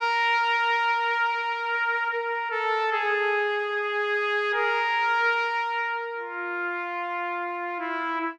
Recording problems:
none

